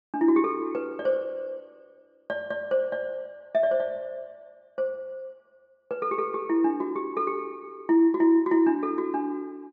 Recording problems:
treble missing; nothing above 8 kHz

